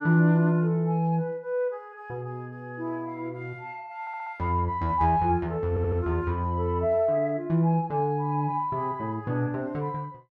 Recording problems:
audio stuttering; at 4 s and at 5.5 s

